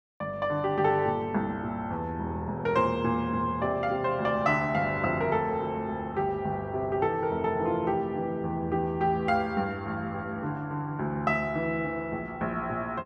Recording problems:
none

